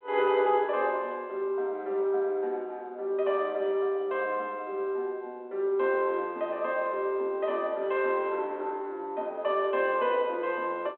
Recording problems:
phone line; 280 Hz to 3.7 kHz, G.726

